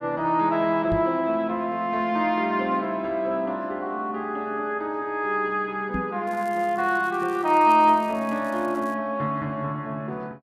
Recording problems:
knock on the microphone; at 1 s and at 6 s; peak -2 dB vs average level
crackling; from 6.5 to 9 s; loose cable, SNR 27 dB

